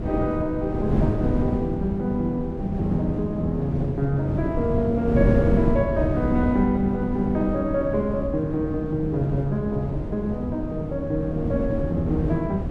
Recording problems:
wind on the microphone; below 270 Hz, SNR 2 dB

